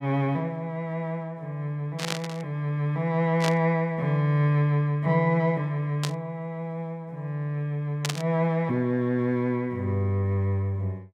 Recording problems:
burst of static; 4 times, first at 2 s; peak +2 dB vs average level

